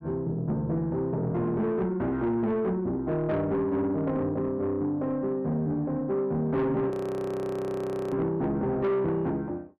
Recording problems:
distorted audio; soft clipping, signal-to-distortion ratio 11 dB
audio freezing; at 7 s for 1 s

